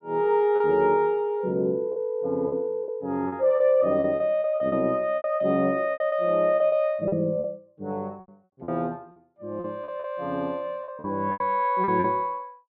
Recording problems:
lost packets; 11% of the sound replaced, filled with repeated pitch periods

